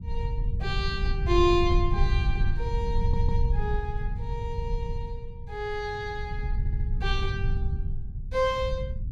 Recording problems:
low-frequency rumble; below 84 Hz, SNR -1 dB
stutter; at 3 s and at 6.5 s

